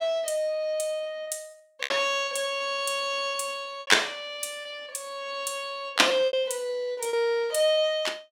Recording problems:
lost packets; 9% of the sound replaced, filled with repeated pitch periods

